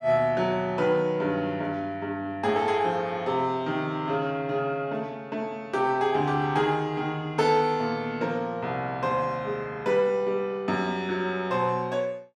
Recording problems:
none

